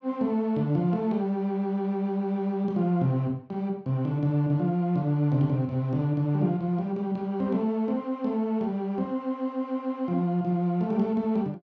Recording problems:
none

